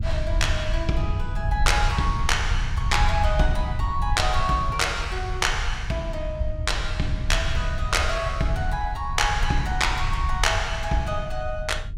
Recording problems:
rumble; below 78 Hz, SNR 3 dB

